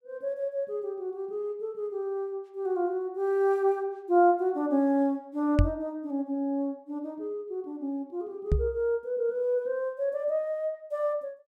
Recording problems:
knock on the microphone; at 5.5 s and at 8.5 s; peak +9 dB vs average level

